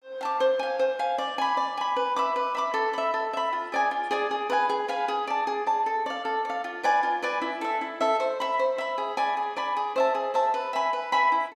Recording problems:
none

